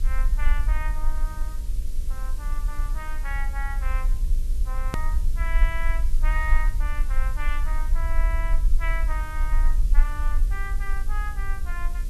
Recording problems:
hum; 60 Hz, harmonics up to 600 Hz, SNR 12 dB
background hiss; slope +2 dB per octave, SNR 13 dB
rumble; below 40 Hz, strongest tone 18 Hz, SNR -8 dB
edit click; at 5 s

